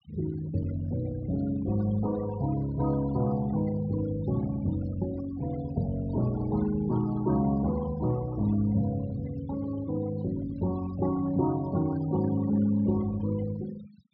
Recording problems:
low-pass filter; nothing above 5.5 kHz
noise reduction artefacts; signal-to-artefact ratio 18 dB

